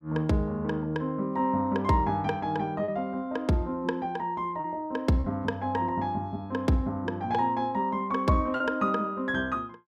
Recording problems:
packet loss; 1.6% of the sound replaced, filled with repeated pitch periods

